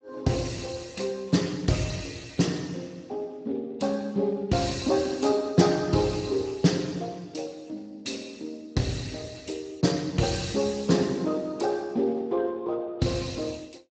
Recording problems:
lossy compression; Speex, log-spectral distance 5 dB, nothing above 7.8 kHz

